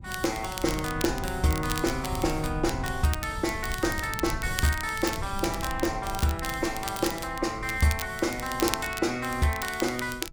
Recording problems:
rumble; below 120 Hz, SNR 11 dB
crackling; vinyl, SNR 10 dB

